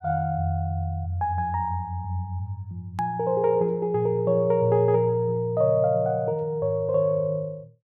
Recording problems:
edit click; at 3 s

